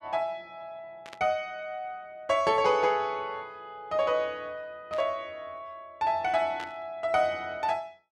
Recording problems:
static burst; at 1 s, at 5 s and at 6.5 s; peak -9 dB vs average level

